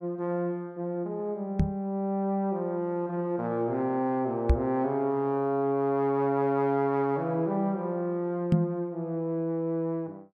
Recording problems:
microphone thump; at 1.5 s, at 4.5 s and at 8.5 s; peak +9 dB vs average level

